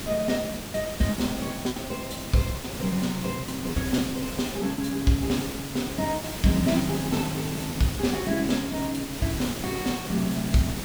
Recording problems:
hiss; slope -3 dB per octave, SNR 6 dB
lost packets; 12% of the sound replaced, filled with repeated pitch periods

